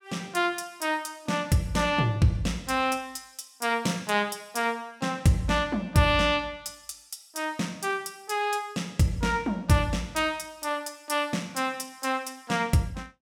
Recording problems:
none

